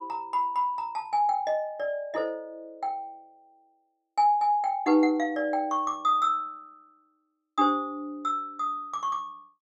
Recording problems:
none

